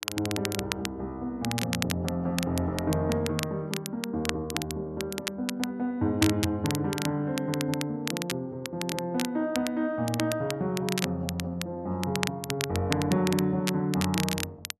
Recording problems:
crackle; vinyl, SNR 6 dB

